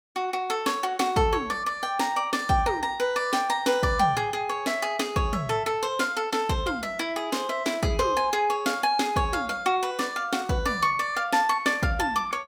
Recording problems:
none

